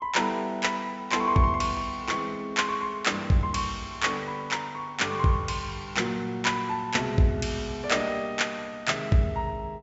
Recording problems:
low-pass filter; nothing above 8 kHz

